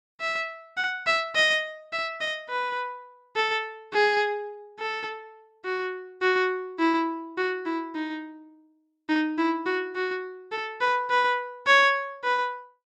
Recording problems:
none

